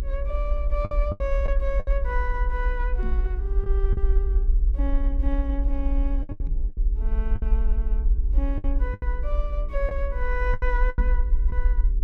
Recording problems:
hum; 60 Hz, harmonics up to 420 Hz, SNR 12 dB
low-frequency rumble; below 52 Hz, SNR -7 dB
lost packets; 8% of the sound replaced, filled with the last packet
microphone thump; at 3 s, at 6.5 s and at 11 s; peak +1 dB vs average level

